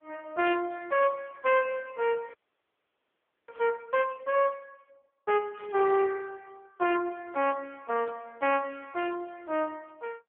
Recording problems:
telephone audio; 260 Hz to 3.3 kHz, AMR-NB
audio freezing; at 2.5 s for 1 s
burst of static; 4 times, first at 3.5 s; peak -20 dB vs average level

